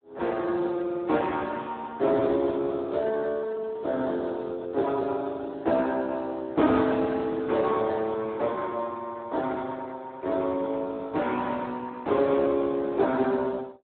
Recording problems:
telephone audio; 240 Hz to 2 kHz, Speex

